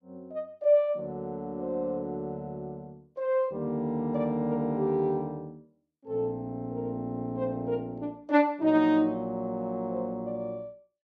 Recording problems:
none

